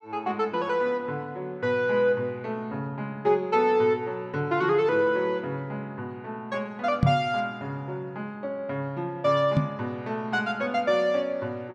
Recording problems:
microphone bump; at 7 s and at 9.5 s; peak +8 dB vs average level

